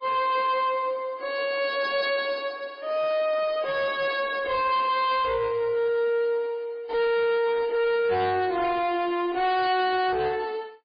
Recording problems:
lossy compression; MP3, then MP3, log-spectral distance 2 dB, nothing above 4.5 kHz
distorted audio; soft clipping, signal-to-distortion ratio 6 dB

